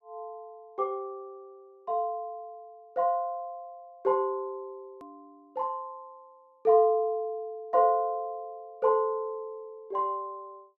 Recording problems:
edit click; at 5 s

